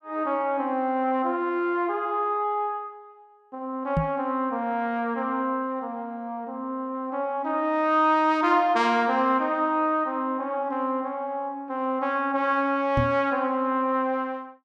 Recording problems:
knock on the microphone; at 4 s and at 13 s; peak +3 dB vs average level

